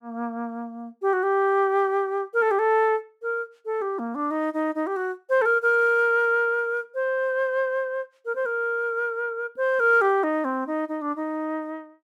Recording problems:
none

